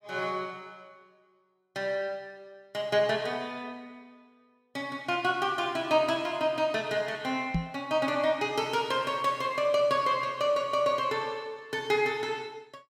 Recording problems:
microphone thump; at 7.5 s; peak +3 dB vs average level

